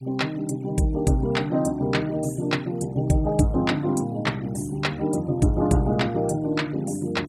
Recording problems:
denoising artefacts; signal-to-artefact ratio 24 dB

